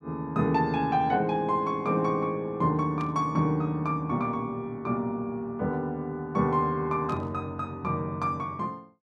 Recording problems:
burst of static; at 3 s and at 7 s; peak -14 dB vs average level

